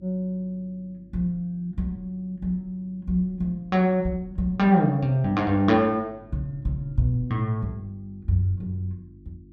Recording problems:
hum; 50 Hz, harmonics up to 350 Hz, SNR 25 dB

